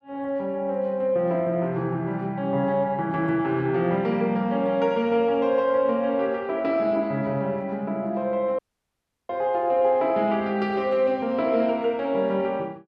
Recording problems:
audio cutting out; at 8.5 s for 0.5 s

